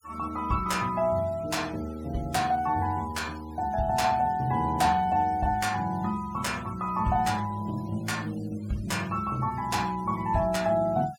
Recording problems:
noise reduction artefacts; signal-to-artefact ratio 23 dB

